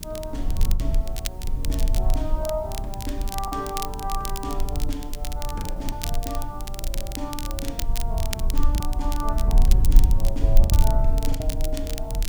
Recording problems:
hum; 60 Hz, harmonics up to 900 Hz, SNR 12 dB
background hiss; slope -2 dB per octave, SNR 21 dB
rumble; below 50 Hz, strongest tone 22 Hz, SNR -7 dB
crackling; vinyl, SNR 3 dB
packet loss; 4% of the sound replaced, filled with the last packet

